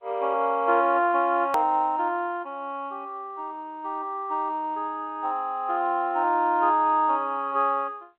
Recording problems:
telephone audio; 240 Hz to 3.4 kHz, G.711
click at an edit; at 1.5 s

